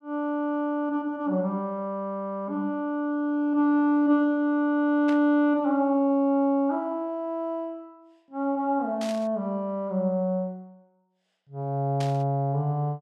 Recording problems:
burst of static; at 5 s, at 9 s and at 12 s; peak -9 dB vs average level

